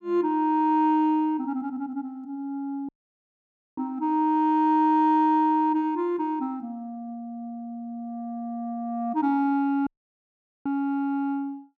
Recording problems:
dropout; at 3 s for 1 s and at 10 s for 1 s

